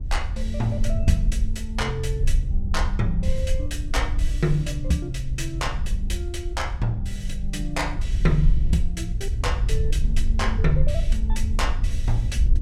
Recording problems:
wind noise; below 58 Hz, SNR -1 dB

